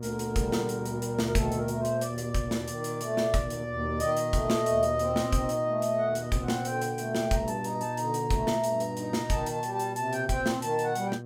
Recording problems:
electrical hum; 60 Hz, harmonics up to 720 Hz, SNR 9 dB

